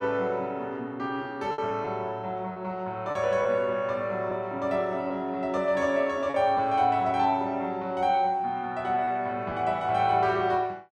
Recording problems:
lost packets; 3% of the sound replaced, filled with repeated pitch periods

